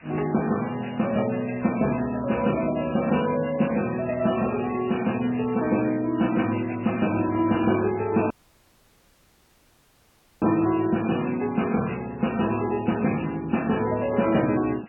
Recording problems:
codec artefacts; MP3, log-spectral distance 11 dB, nothing above 2.7 kHz
hiss; SNR 28 dB
dropout; at 8.5 s for 2 s

